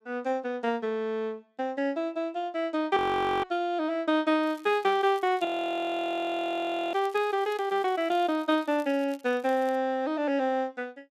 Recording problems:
frozen audio; at 3 s and at 5.5 s for 1.5 s
crackle; from 4.5 to 10 s; loose cable, SNR 28 dB

